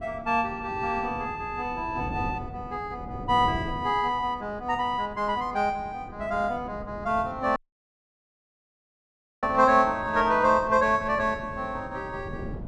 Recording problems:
wind on the microphone; below 300 Hz, SNR 15 dB
dropout; at 7.5 s for 2 s

